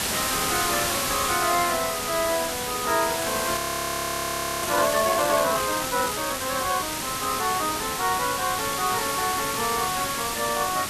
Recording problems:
background hiss; slope -1 dB per octave, SNR 1 dB
frozen audio; at 3.5 s for 1 s

